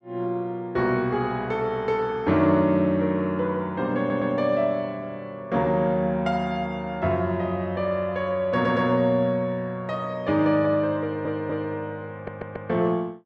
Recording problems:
audio stuttering; 4 times, first at 4 s

